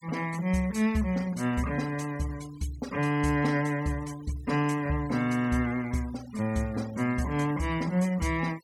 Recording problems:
noise reduction artefacts; signal-to-artefact ratio 20 dB

